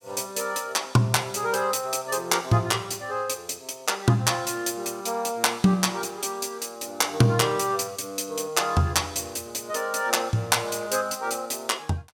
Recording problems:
none

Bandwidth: 16.5 kHz